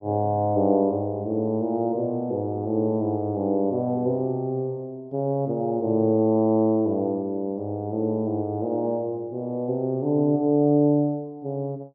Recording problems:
none

